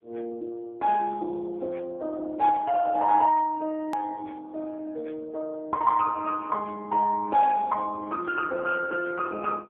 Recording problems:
phone line; 300 Hz to 2.1 kHz, AMR-NB
edit click; at 4 s

